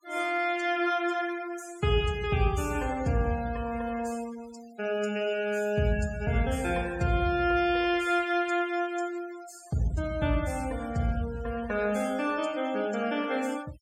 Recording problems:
denoising artefacts; signal-to-artefact ratio 20 dB

